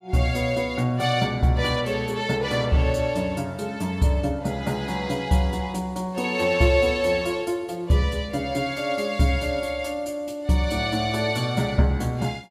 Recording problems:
none

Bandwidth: 15.5 kHz